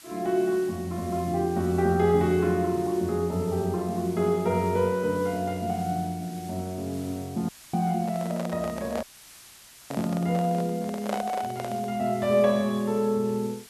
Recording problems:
hiss; slope +2 dB per octave, SNR 20 dB
dropout; at 7.5 s and at 9 s for 1 s
microphone handling noise; from 8 to 12 s; peak -1 dB vs average level

